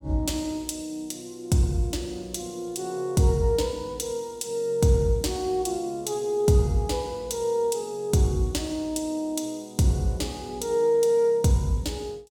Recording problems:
none

